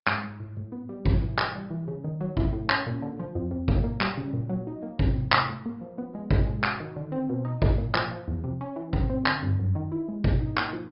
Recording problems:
low-pass filter; nothing above 5.2 kHz
codec artefacts; Opus, log-spectral distance 2 dB

